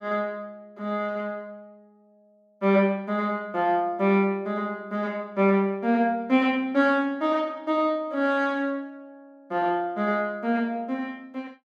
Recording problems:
none

